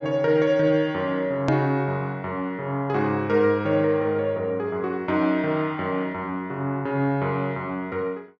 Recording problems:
treble cut off; nothing above 8 kHz
edit click; at 1.5 s

